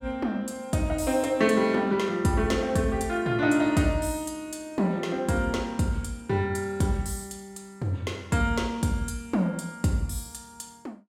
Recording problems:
none

